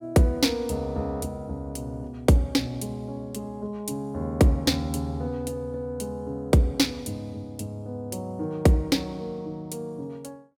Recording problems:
none

